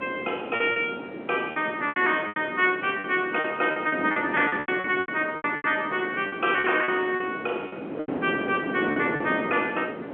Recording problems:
phone line; 260 Hz to 3.4 kHz, G.711
wind noise; below 570 Hz, SNR 9 dB
packet loss; 12% of the sound replaced, filled with repeated pitch periods

